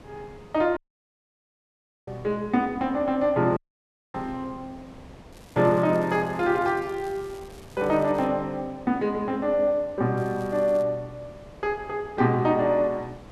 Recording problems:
wind on the microphone; below 710 Hz, SNR 23 dB
dropout; at 1 s for 1.5 s and at 3.5 s for 0.5 s
crackling; from 5.5 to 8.5 s and at 10 s; loose cable, SNR 28 dB

